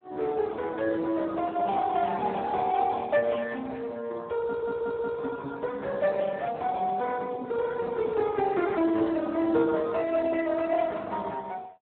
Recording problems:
phone line; 190 Hz to 4 kHz, Speex
audio stuttering; at 4.5 s

